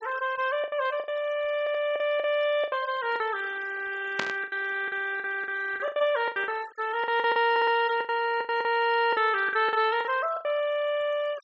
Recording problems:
treble missing; nothing above 8 kHz
noise reduction artefacts; signal-to-artefact ratio 19 dB
packet loss; 12% of the sound replaced, filled with the last packet
audio stuttering; at 1.5 s and at 7.5 s
static burst; at 4 s; peak +1 dB vs average level

